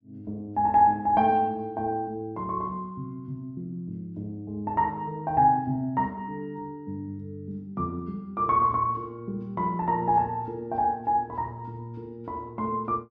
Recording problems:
none

